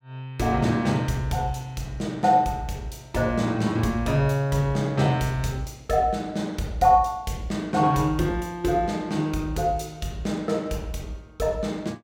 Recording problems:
none

